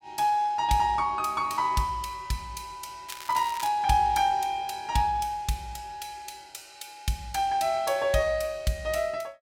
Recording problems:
crackling; at 3 s; loose cable, SNR 15 dB

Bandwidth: 16.5 kHz